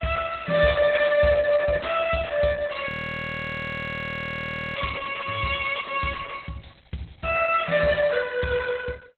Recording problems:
lossy codec; Opus, log-spectral distance 6 dB, nothing above 3.9 kHz
audio freezing; at 3 s for 2 s

